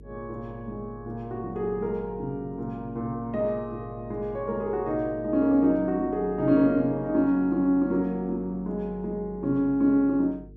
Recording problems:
hum; 50 Hz, harmonics up to 450 Hz, SNR 21 dB

